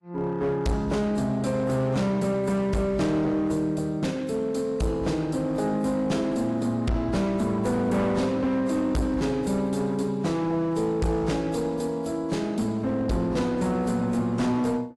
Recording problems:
codec artefacts; AAC, log-spectral distance 2 dB, nothing above 11.3 kHz
distortion; hard clipping, uneven, signal-to-distortion ratio 10 dB

